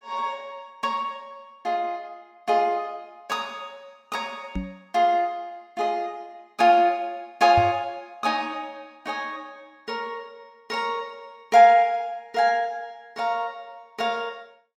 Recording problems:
knock on the microphone; at 4.5 s and at 7.5 s; peak -1 dB vs average level

